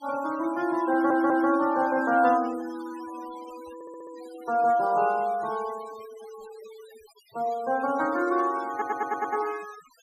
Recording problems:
noise reduction artefacts; signal-to-artefact ratio 21 dB
audio stuttering; at 1 s, at 3.5 s and at 8.5 s

